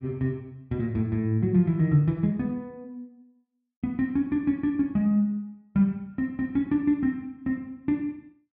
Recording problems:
none

